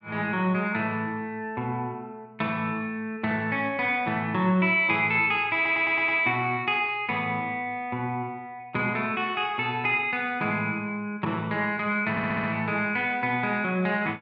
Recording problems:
stutter; at 5.5 s and at 12 s

